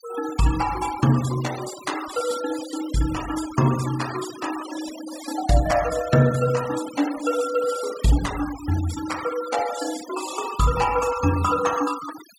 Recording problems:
denoising artefacts; signal-to-artefact ratio 12 dB

